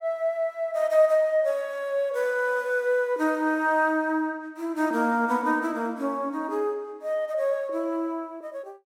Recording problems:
none

